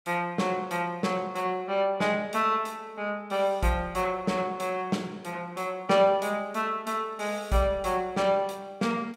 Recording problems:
none

